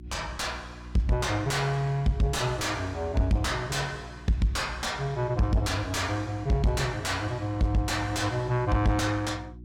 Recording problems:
distortion; soft clipping, signal-to-distortion ratio 7 dB
hum; 60 Hz, harmonics up to 360 Hz, SNR 17 dB

